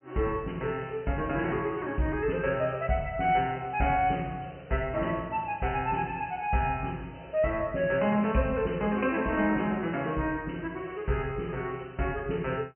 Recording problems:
treble missing; nothing above 3 kHz

